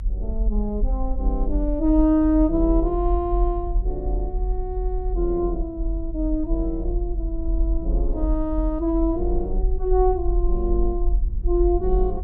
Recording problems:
hum; 50 Hz, harmonics up to 500 Hz, SNR 21 dB
low-frequency rumble; below 46 Hz, strongest tone 44 Hz, SNR 2 dB

